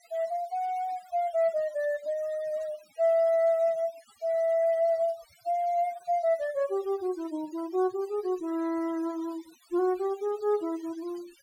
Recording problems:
denoising artefacts; signal-to-artefact ratio 25 dB

